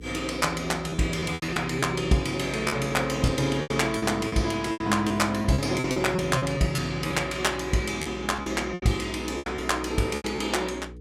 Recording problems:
electrical hum; 60 Hz, harmonics up to 480 Hz, SNR 16 dB
packet loss; 11% of the sound replaced, filled with repeated pitch periods

